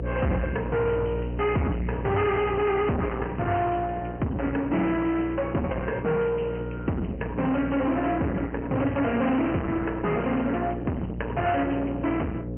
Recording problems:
low-pass filter; nothing above 3 kHz
lossy compression; Opus, log-spectral distance 3 dB
distorted audio; soft clipping, signal-to-distortion ratio 7 dB
electrical hum; 60 Hz, harmonics up to 540 Hz, SNR 6 dB

